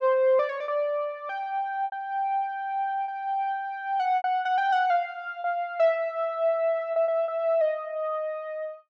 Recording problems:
packet loss; 5% of the sound replaced, filled with repeated pitch periods

